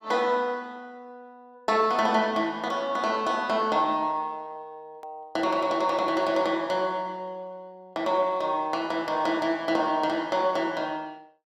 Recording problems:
hard cut with a click; at 5 s

